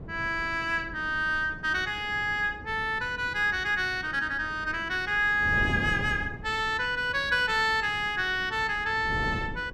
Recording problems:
wind noise; below 300 Hz, SNR 14 dB

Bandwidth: 14.5 kHz